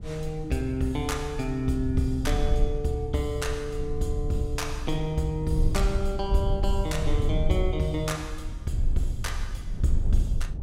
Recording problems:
rumble; below 68 Hz, SNR 2 dB

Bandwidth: 16 kHz